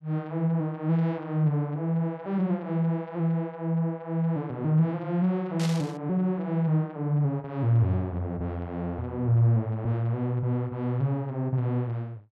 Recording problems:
burst of static; at 5.5 s; peak -4 dB vs average level

